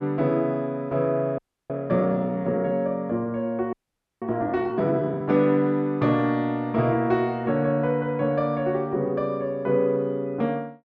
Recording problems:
audio freezing; at 1.5 s and at 3.5 s

